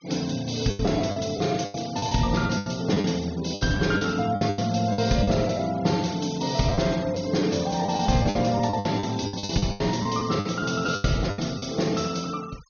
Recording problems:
treble missing; nothing above 6.5 kHz
denoising artefacts; signal-to-artefact ratio 19 dB
packet loss; 13% of the sound replaced, filled with the last packet

